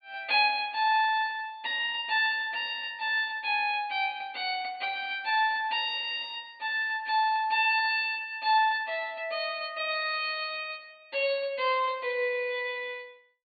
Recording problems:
low-pass filter; nothing above 4.7 kHz

